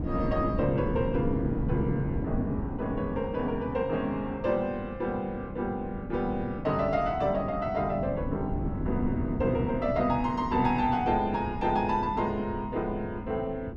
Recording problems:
wind on the microphone; below 280 Hz, SNR 5 dB

